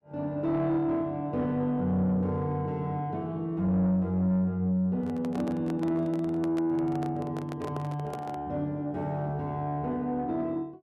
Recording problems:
distortion; soft clipping, signal-to-distortion ratio 12 dB
handling noise; from 5 to 8.5 s; peak -5 dB vs average level

